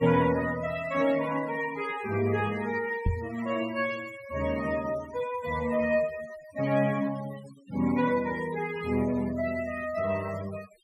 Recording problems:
noise reduction artefacts; signal-to-artefact ratio 16 dB
microphone bump; at 3 s; peak +4 dB vs average level

